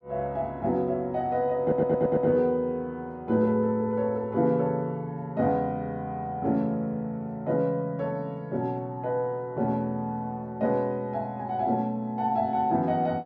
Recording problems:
stutter; at 1.5 s

